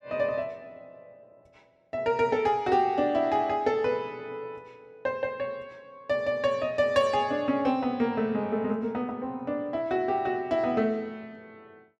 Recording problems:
none

